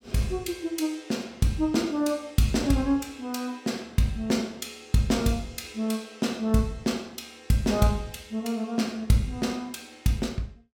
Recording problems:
none

